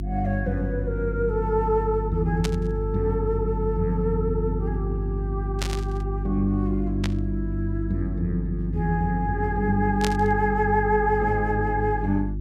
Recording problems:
hum; 50 Hz, harmonics up to 350 Hz, SNR 4 dB
burst of static; 4 times, first at 2.5 s; peak +1 dB vs average level

